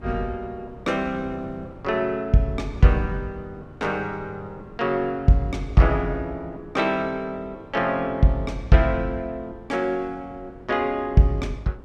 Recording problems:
wind noise; below 300 Hz, SNR 21 dB

